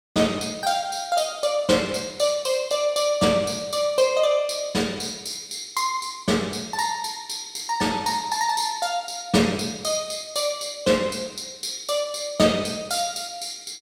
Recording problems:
none

